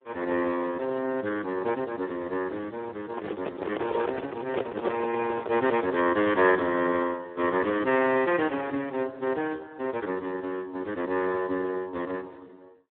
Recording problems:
phone line; 260 Hz to 3 kHz, Speex
handling noise; from 3 to 6 s; peak +4 dB vs average level

